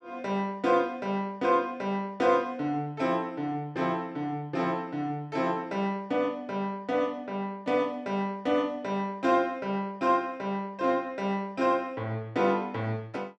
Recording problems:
none

